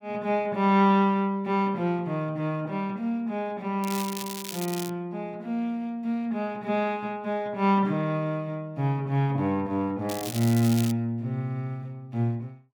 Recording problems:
crackle; from 4 to 5 s and at 10 s; loose cable, SNR 10 dB

